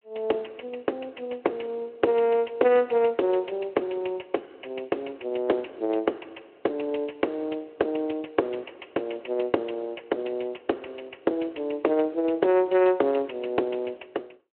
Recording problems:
phone line; 280 Hz to 3.1 kHz, Speex

